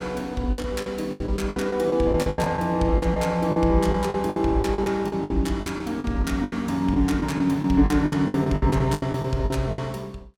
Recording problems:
lost packets; 17% of the sound replaced, filled with the last packet

